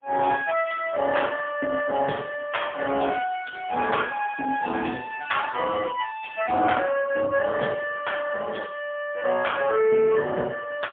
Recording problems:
phone line; 190 Hz to 3.5 kHz, AMR-NB, then MP3

